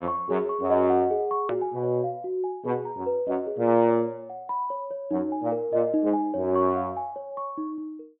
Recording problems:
treble cut off; nothing above 4 kHz
click at an edit; at 1.5 s

